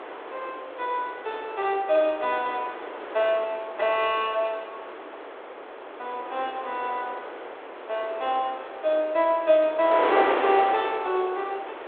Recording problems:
telephone audio; 340 Hz to 3.7 kHz, G.726
wind noise; below 1.3 kHz, SNR 8 dB

